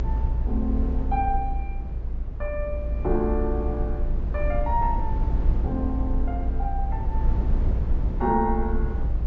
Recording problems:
treble cut off; nothing above 7.3 kHz
low-frequency rumble; below 60 Hz, SNR -1 dB

